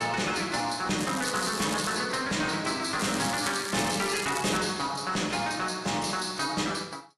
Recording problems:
codec artefacts; AAC, log-spectral distance 8 dB, nothing above 11 kHz
distortion; hard clipping, signal-to-distortion ratio 11 dB
crackling; at 1 s and from 3 to 4.5 s; loose cable, SNR 8 dB

